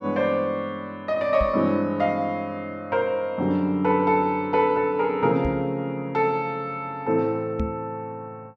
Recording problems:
microphone thump; at 1.5 s, at 5.5 s and at 7.5 s; peak 0 dB vs average level

